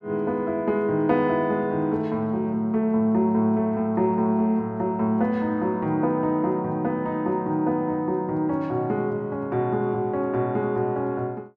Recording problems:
none

